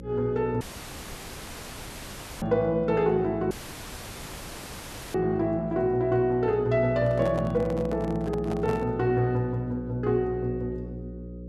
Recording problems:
hum; 60 Hz, harmonics up to 540 Hz, SNR 13 dB
dropout; at 0.5 s for 2 s and at 3.5 s for 1.5 s
microphone handling noise; from 7 to 9 s; peak -8 dB vs average level

